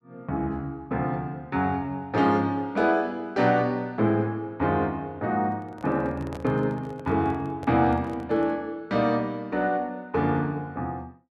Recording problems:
microphone handling noise; from 5.5 to 8.5 s; peak -9 dB vs average level

